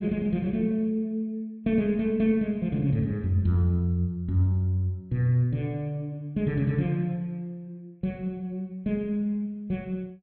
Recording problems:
low-pass filter; nothing above 4.2 kHz

